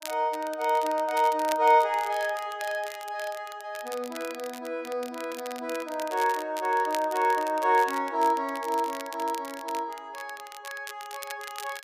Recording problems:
crackling; vinyl, SNR 16 dB

